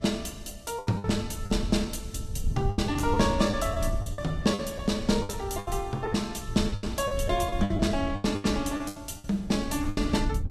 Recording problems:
lossy compression; Vorbis, log-spectral distance 3 dB, nothing above 14.3 kHz
wind on the microphone; below 100 Hz, SNR 7 dB
lost packets; 13% of the sound replaced, filled with the last packet

